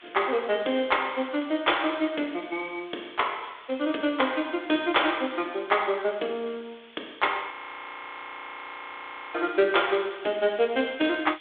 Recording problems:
telephone audio; 280 Hz to 3.6 kHz, G.726
hiss; SNR 24 dB
audio freezing; at 7.5 s for 2 s

